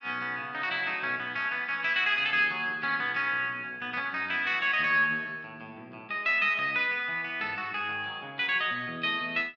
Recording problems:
none

